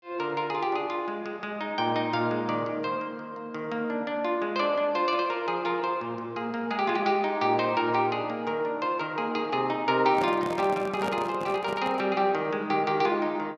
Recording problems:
handling noise; from 10 to 12 s; peak -2 dB vs average level

